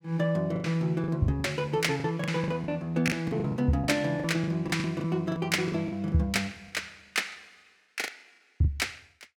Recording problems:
lost packets; 14% of the sound replaced, filled with the last packet

